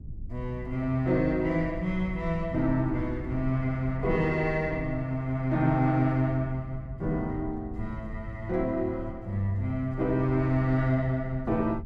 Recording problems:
low-frequency rumble; below 110 Hz, SNR 12 dB

